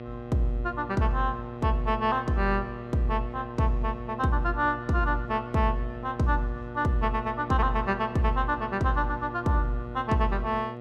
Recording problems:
electrical hum; 60 Hz, harmonics up to 2 kHz, SNR 11 dB

